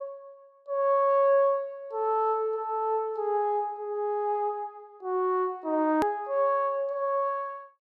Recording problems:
edit click; at 6 s

